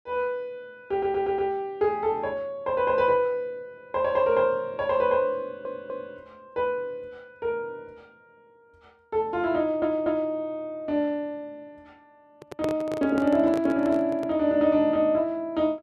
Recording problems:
stutter; at 1 s, at 5.5 s and at 9.5 s
microphone handling noise; from 12 to 14 s; peak -2 dB vs average level

